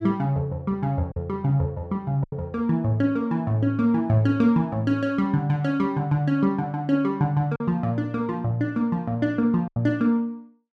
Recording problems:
packet loss; 2% of the sound replaced, filled with silence

